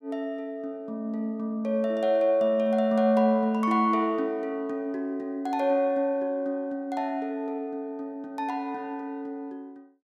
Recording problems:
none

